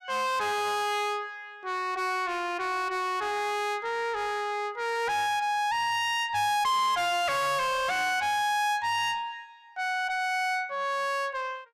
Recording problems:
distorted audio; soft clipping, signal-to-distortion ratio 6 dB

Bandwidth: 15 kHz